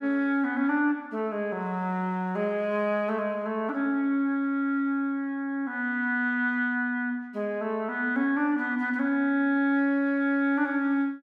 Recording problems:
none

